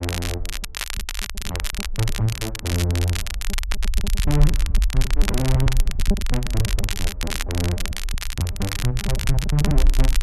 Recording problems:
low-frequency rumble; below 50 Hz, strongest tone 26 Hz, SNR 1 dB
crackling; vinyl, SNR 4 dB
lost packets; 16% of the sound replaced, filled with repeated pitch periods

